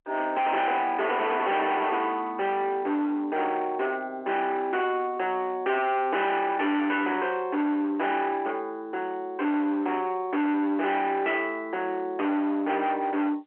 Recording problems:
telephone audio; 240 Hz to 3.3 kHz, G.711
distortion; hard clipping, uneven, signal-to-distortion ratio 6 dB

